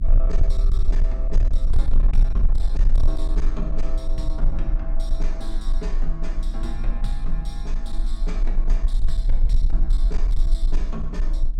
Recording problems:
distortion; hard clipping, uneven, signal-to-distortion ratio 11 dB
hum; 60 Hz, harmonics up to 300 Hz, SNR 5 dB
low-frequency rumble; below 34 Hz, strongest tone 26 Hz, SNR -11 dB

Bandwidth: 16 kHz